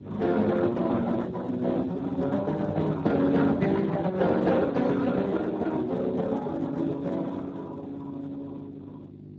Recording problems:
lossy codec; Opus, then Speex, log-spectral distance 3 dB
hum; 50 Hz, harmonics up to 500 Hz, SNR 17 dB

